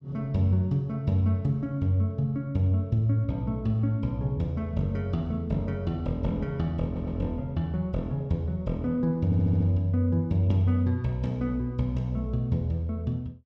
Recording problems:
audio stuttering; at 7 s and at 9.5 s

